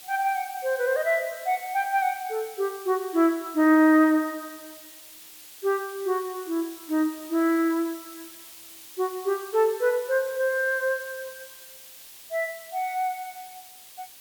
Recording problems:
hiss; slope +2 dB per octave, SNR 18 dB

